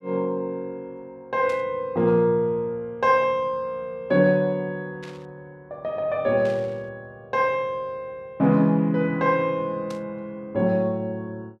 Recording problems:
burst of static; 4 times, first at 1.5 s; peak -13 dB vs average level

